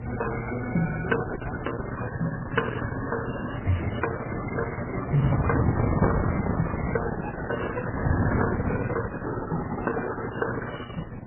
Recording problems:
lossy codec; Opus, then MP3, log-spectral distance 4 dB, nothing above 3 kHz
hum; 60 Hz, harmonics up to 720 Hz, SNR 7 dB
wind on the microphone; below 280 Hz, SNR -2 dB

